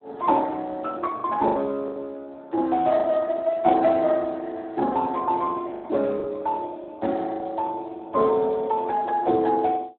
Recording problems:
phone line; 220 Hz to 2.2 kHz, Speex
lost packets; 5% of the sound replaced, filled with the last packet

